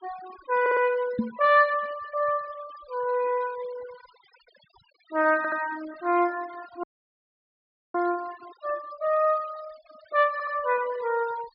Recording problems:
treble cut off; nothing above 5.5 kHz
noise reduction artefacts; signal-to-artefact ratio 21 dB
audio stuttering; at 0.5 s, at 5.5 s and at 10 s
knock on the microphone; at 1 s; peak +3 dB vs average level
audio cutting out; at 7 s for 1 s

